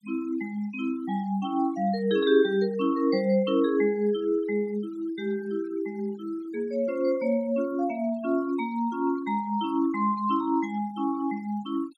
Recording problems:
denoising artefacts; signal-to-artefact ratio 22 dB

